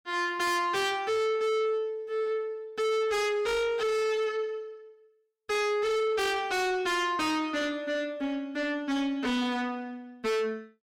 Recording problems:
distorted audio; soft clipping, signal-to-distortion ratio 6 dB

